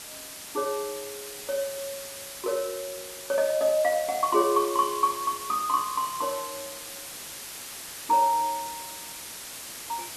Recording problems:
hiss; slope 0 dB per octave, SNR 10 dB

